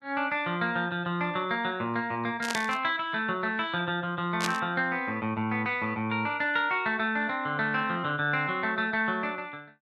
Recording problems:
burst of static; at 2.5 s and at 4.5 s; peak +2 dB vs average level

